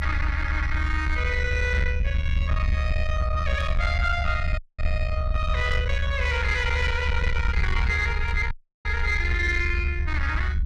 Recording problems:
distorted audio; soft clipping, signal-to-distortion ratio 11 dB
rumble; below 74 Hz, SNR 0 dB
static burst; at 3.5 s, at 5.5 s and at 8.5 s; peak -14 dB vs average level
audio cutting out; at 4.5 s and at 8.5 s

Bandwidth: 14 kHz